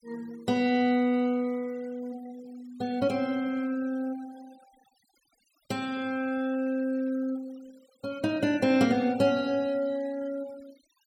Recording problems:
noise reduction artefacts; signal-to-artefact ratio 24 dB

